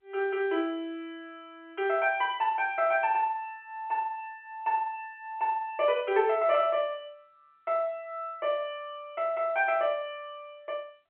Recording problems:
phone line; 280 Hz to 3.2 kHz, G.711

